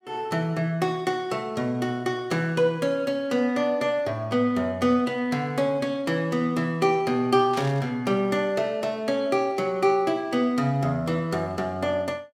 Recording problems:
static burst; at 7.5 s; peak -10 dB vs average level

